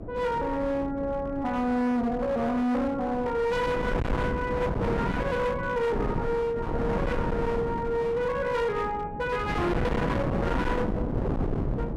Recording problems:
distortion; hard clipping, signal-to-distortion ratio 7 dB
mains hum; 60 Hz, harmonics up to 660 Hz, SNR 22 dB
wind on the microphone; below 480 Hz, SNR 4 dB

